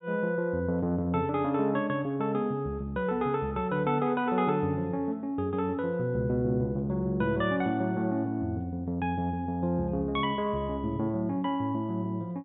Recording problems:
low-pass filter; nothing above 4 kHz

